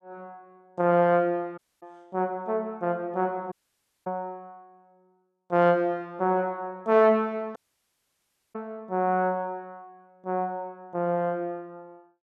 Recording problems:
dropout; at 1.5 s, at 3.5 s for 0.5 s and at 7.5 s for 1 s

